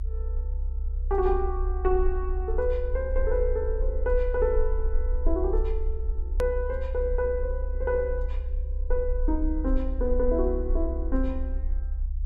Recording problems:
low-frequency rumble; below 64 Hz, strongest tone 34 Hz, SNR 1 dB
hard cut with a click; at 6.5 s

